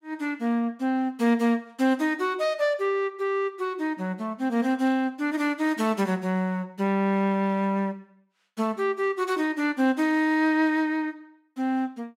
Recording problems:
none

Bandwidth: 16 kHz